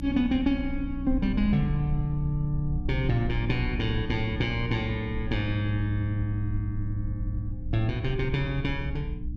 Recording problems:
electrical hum; 60 Hz, harmonics up to 300 Hz, SNR 9 dB
wind noise; below 62 Hz, SNR 9 dB

